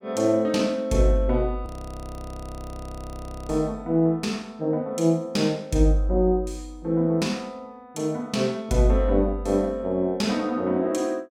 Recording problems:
audio freezing; at 1.5 s for 2 s

